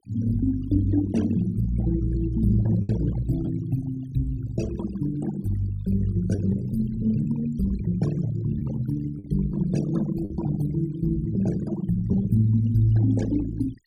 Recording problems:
noise reduction artefacts; signal-to-artefact ratio 17 dB
packet loss; 2% of the sound replaced, filled with the last packet

